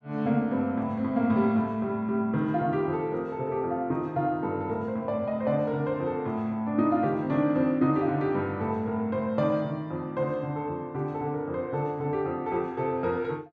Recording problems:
none

